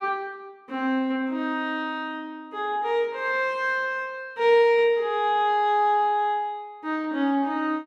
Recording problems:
none

